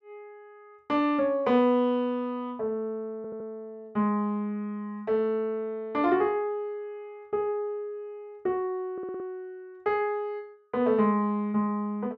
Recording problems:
stutter; at 3 s and at 9 s

